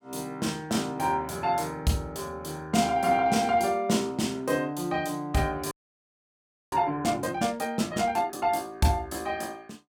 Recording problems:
frozen audio; at 5.5 s for 1 s

